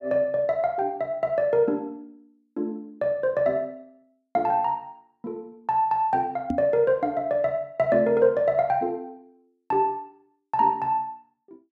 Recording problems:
knock on the microphone; at 6.5 s; peak +1 dB vs average level

